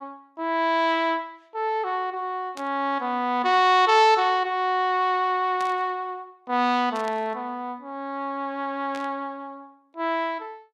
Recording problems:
burst of static; 4 times, first at 2.5 s; peak -12 dB vs average level

